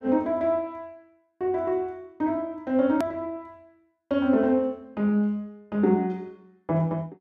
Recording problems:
hard cut with a click; at 3 s

